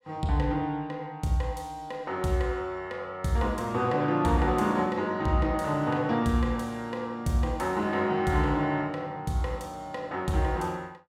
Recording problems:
none

